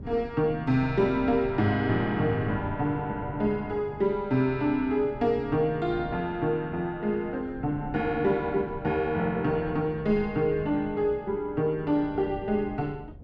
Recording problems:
wind on the microphone; below 220 Hz, SNR 16 dB

